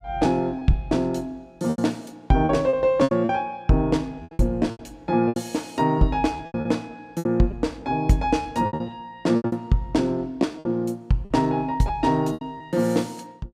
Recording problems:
lost packets; 11% of the sound replaced, filled with repeated pitch periods

